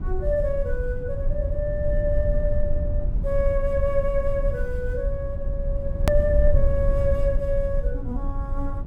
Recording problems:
rumble; below 68 Hz, SNR 0 dB
hard cut with a click; at 6 s

